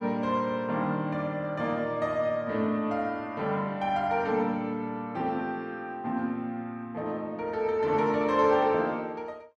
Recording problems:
none

